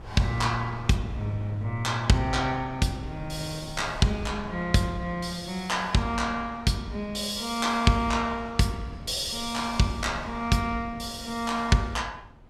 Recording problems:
wind on the microphone; below 230 Hz, SNR 19 dB

